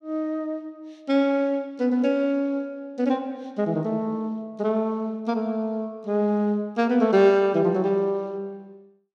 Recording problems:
none

